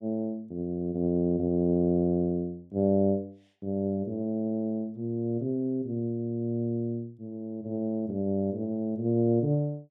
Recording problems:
none

